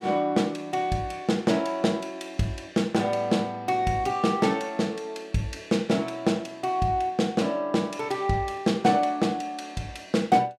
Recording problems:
none

